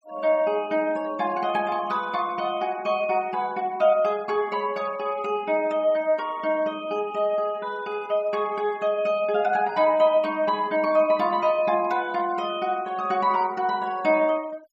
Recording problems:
noise reduction artefacts; signal-to-artefact ratio 24 dB

